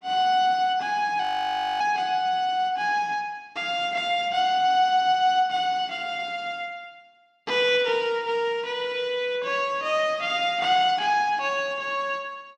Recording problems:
audio freezing; at 1 s for 0.5 s

